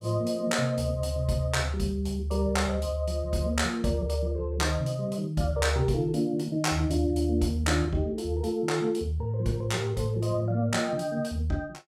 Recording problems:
none

